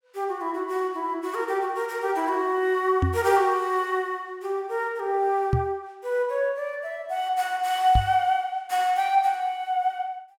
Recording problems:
knock on the microphone; at 3 s, at 5.5 s and at 8 s; peak +5 dB vs average level

